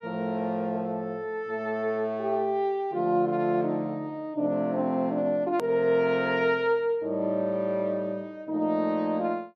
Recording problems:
hard cut with a click; at 5.5 s

